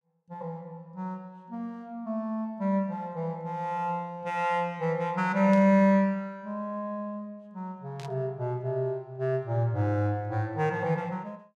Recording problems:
static burst; at 5.5 s and at 8 s; peak -13 dB vs average level

